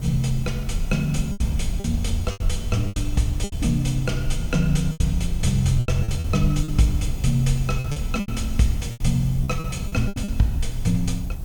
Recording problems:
hiss; slope +4 dB per octave, SNR 23 dB
rumble; below 74 Hz, SNR 5 dB
packet loss; 10% of the sound replaced, filled with repeated pitch periods

